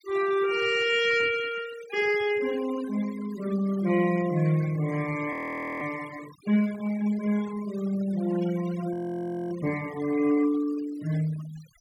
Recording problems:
denoising artefacts; signal-to-artefact ratio 17 dB
audio freezing; at 5.5 s and at 9 s for 0.5 s

